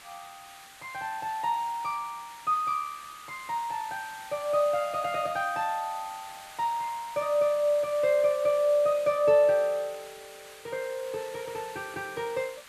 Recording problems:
background hiss; SNR 18 dB

